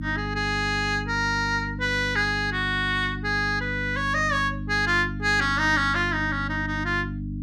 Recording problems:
electrical hum; 50 Hz, harmonics up to 300 Hz, SNR 8 dB

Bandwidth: 15 kHz